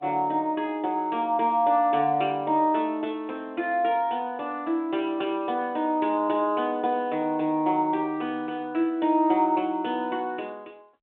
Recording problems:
telephone audio; 260 Hz to 3.4 kHz, G.726

